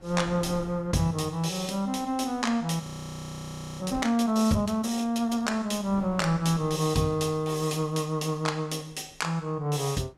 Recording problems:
wind noise; below 450 Hz, SNR 22 dB
audio freezing; at 3 s for 1 s

